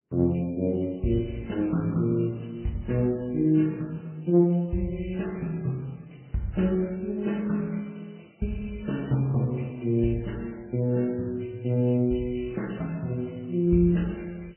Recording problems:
lossy compression; MP3, then AAC, log-spectral distance 6 dB, nothing above 2.7 kHz

